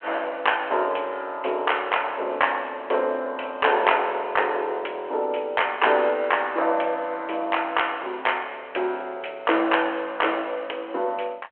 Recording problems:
telephone audio; 340 Hz to 3.2 kHz, G.726

